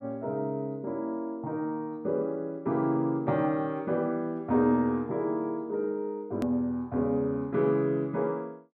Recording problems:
click at an edit; at 6.5 s

